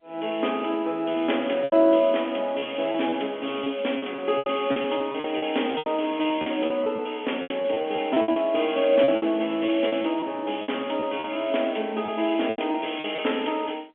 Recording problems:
telephone audio; 240 Hz to 3.4 kHz, G.711
lost packets; 11% of the sound replaced, filled with repeated pitch periods

